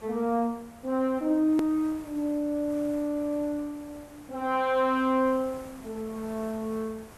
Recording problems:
hiss; SNR 21 dB
edit click; at 1.5 s

